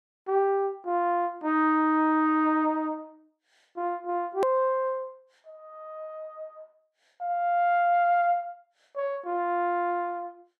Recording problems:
click at an edit; at 4.5 s

